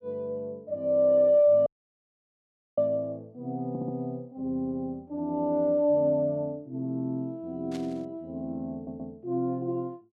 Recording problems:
audio cutting out; at 1.5 s for 1 s
stutter; at 3.5 s and at 8.5 s
static burst; at 7.5 s; peak -13 dB vs average level

